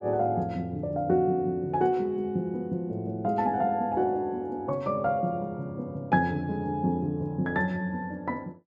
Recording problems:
none

